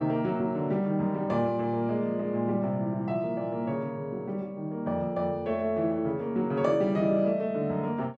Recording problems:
none

